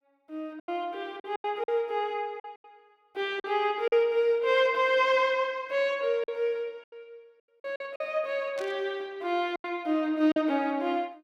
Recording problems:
lost packets; 7% of the sound replaced, filled with silence
burst of static; at 8.5 s; peak -12 dB vs average level

